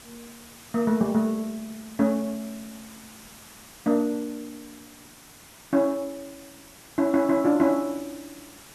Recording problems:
background hiss; slope -2 dB per octave, SNR 20 dB

